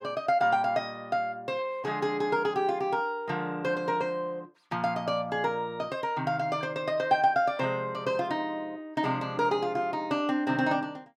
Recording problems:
none

